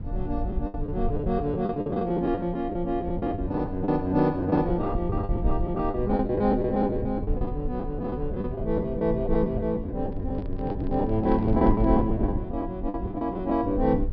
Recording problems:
treble missing; nothing above 5.5 kHz
low-frequency rumble; below 90 Hz, SNR 7 dB
lost packets; 14% of the sound replaced, filled with the last packet
microphone handling noise; from 10 to 12 s; peak -9 dB vs average level

